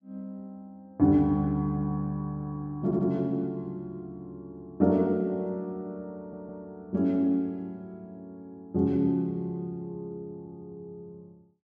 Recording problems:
stutter; at 3 s and at 6 s

